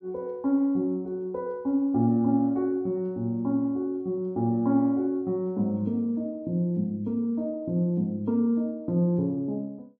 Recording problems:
none

